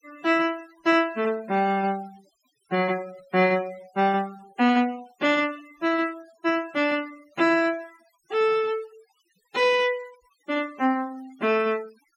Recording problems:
denoising artefacts; signal-to-artefact ratio 23 dB

